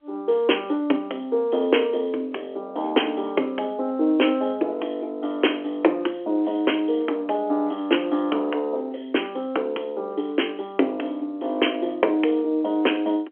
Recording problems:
telephone audio; 260 Hz to 3.3 kHz, G.711

